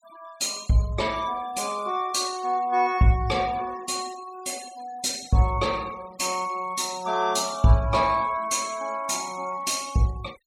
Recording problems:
noise reduction artefacts; signal-to-artefact ratio 20 dB

